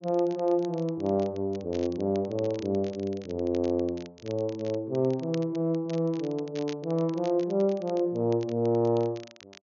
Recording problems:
treble missing; nothing above 6.8 kHz
crackle; vinyl, SNR 23 dB

